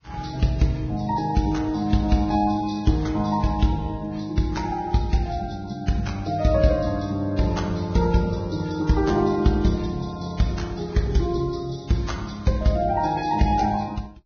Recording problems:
lossy codec; Vorbis, log-spectral distance 3 dB, nothing above 6.3 kHz

